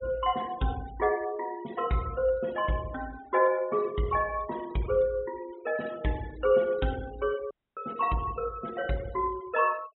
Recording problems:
low-pass filter; nothing above 3.9 kHz
denoising artefacts; signal-to-artefact ratio 20 dB
audio cutting out; at 7.5 s

